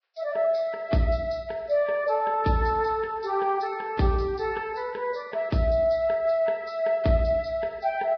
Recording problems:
codec artefacts; Vorbis, log-spectral distance 2 dB, nothing above 5.3 kHz

